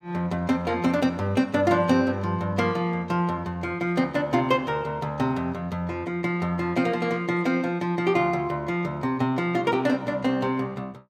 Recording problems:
none

